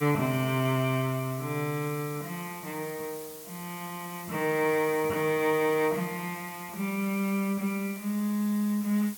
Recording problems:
hiss; slope 0 dB per octave, SNR 14 dB

